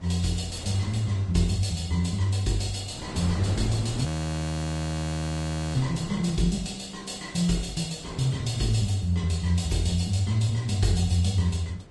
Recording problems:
codec artefacts; Vorbis, log-spectral distance 4 dB, nothing above 11.3 kHz
wind noise; below 650 Hz, SNR 15 dB
audio freezing; at 4 s for 1.5 s

